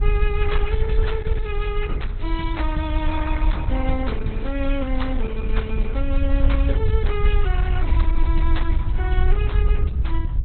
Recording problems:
lossy codec; AAC, then Opus, log-spectral distance 2 dB, nothing above 4 kHz
wind on the microphone; below 62 Hz, SNR -5 dB

